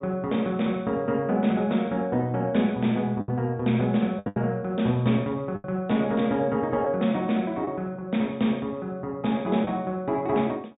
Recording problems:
treble missing; nothing above 4 kHz
packet loss; 3% of the sound replaced, filled with the last packet

